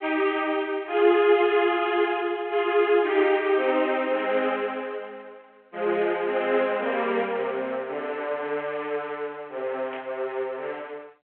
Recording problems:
telephone audio; 320 Hz to 3.4 kHz, G.726
static burst; at 10 s; peak -12 dB vs average level

